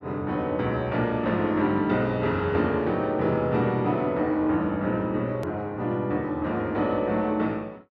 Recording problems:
click at an edit; at 5.5 s

